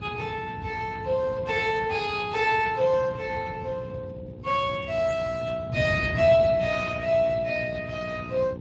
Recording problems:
lossy compression; Speex, log-spectral distance 4 dB
hum; 60 Hz, harmonics up to 900 Hz, SNR 16 dB
wind on the microphone; below 200 Hz, SNR 12 dB

